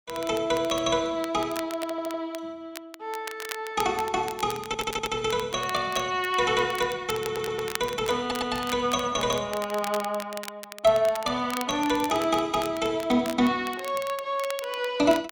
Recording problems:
crackling; vinyl, SNR 14 dB
stutter; 4 times, first at 2 s

